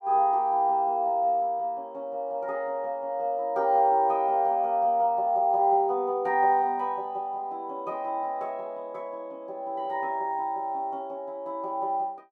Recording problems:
none

